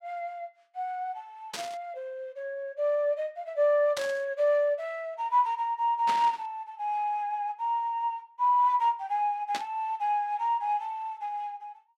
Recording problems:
static burst; 4 times, first at 1.5 s; peak -2 dB vs average level

